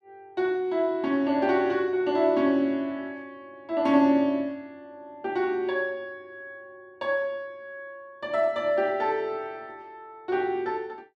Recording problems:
none

